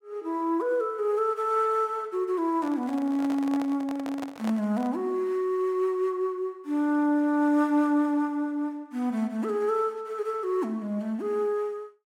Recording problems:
microphone handling noise; from 2.5 to 5 s; peak -5 dB vs average level

